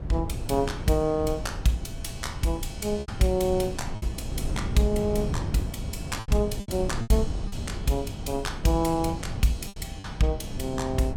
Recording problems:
wind on the microphone; below 170 Hz, SNR 6 dB
packet loss; 4% of the sound replaced, filled with repeated pitch periods

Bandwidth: 17 kHz